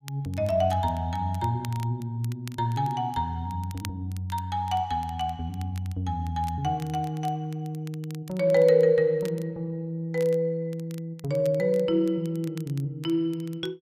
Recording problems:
crackle; vinyl, SNR 23 dB

